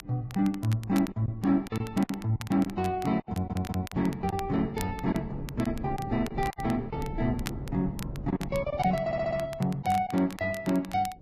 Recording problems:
lossy codec; Vorbis, log-spectral distance 2 dB
wind on the microphone; below 220 Hz, SNR 13 dB
crackling; vinyl, SNR 17 dB
lost packets; 8% of the sound replaced, filled with silence
audio stuttering; at 3.5 s and at 9 s

